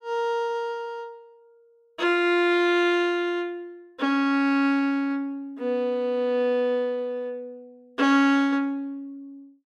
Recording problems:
none

